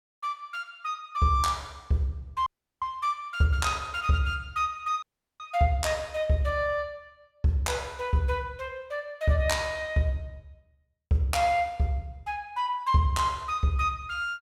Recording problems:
audio cutting out; at 2.5 s and at 5 s

